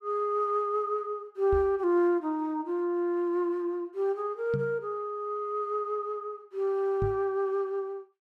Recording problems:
knock on the microphone; at 1.5 s, at 4.5 s and at 7 s; peak 0 dB vs average level

